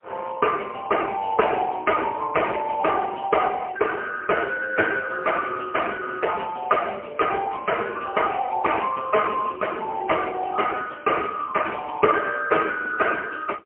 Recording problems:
phone line; 260 Hz to 2.3 kHz, AMR-NB, then MP3

